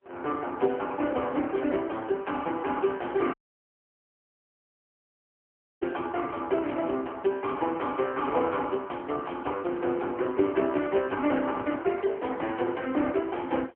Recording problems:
telephone audio; 240 Hz to 3.1 kHz, AMR-NB
dropout; at 3.5 s for 2.5 s

